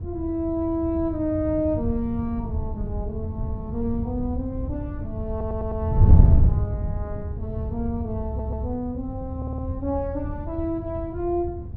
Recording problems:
wind on the microphone; below 110 Hz, SNR -2 dB
audio stuttering; at 5.5 s, at 8.5 s and at 9.5 s

